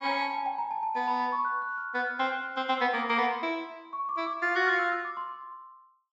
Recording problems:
low-pass filter; nothing above 8 kHz

